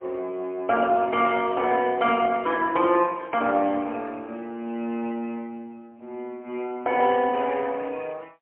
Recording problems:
telephone audio; 240 Hz to 3.2 kHz, AMR-NB, then MP3

